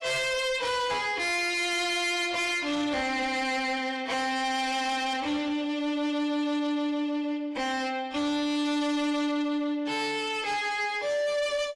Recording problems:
codec artefacts; AAC, log-spectral distance 2 dB, nothing above 11.3 kHz
distortion; soft clipping, signal-to-distortion ratio 6 dB

